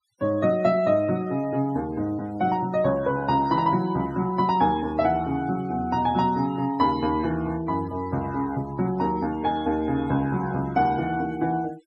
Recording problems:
noise reduction artefacts; signal-to-artefact ratio 23 dB

